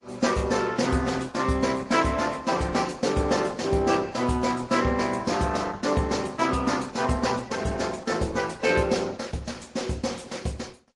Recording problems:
codec artefacts; Opus, then MP3, log-spectral distance 4 dB, nothing above 11 kHz

